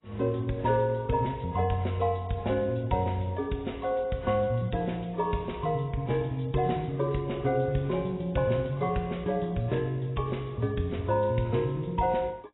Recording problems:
codec artefacts; AAC, log-spectral distance 3 dB, nothing above 3.9 kHz

